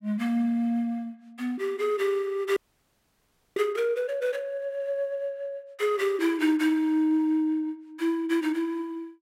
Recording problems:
frozen audio; at 2.5 s for 1 s

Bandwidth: 16 kHz